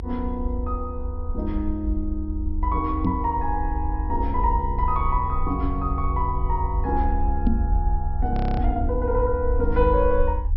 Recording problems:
treble missing; nothing above 5.5 kHz
low-frequency rumble; below 76 Hz, SNR 1 dB
microphone thump; at 3 s and at 7.5 s; peak +7 dB vs average level
frozen audio; at 8.5 s

